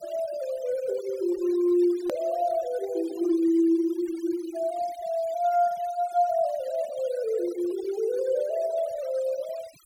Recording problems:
noise reduction artefacts; signal-to-artefact ratio 22 dB
edit click; at 2 s

